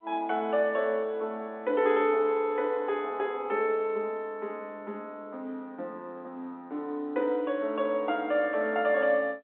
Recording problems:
phone line; 240 Hz to 3.6 kHz, G.711

